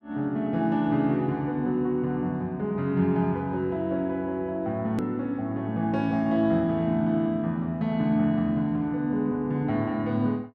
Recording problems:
edit click; at 5 s

